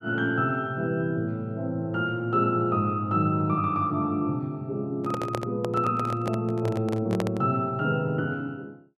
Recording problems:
microphone handling noise; from 5 to 7.5 s; peak +1 dB vs average level

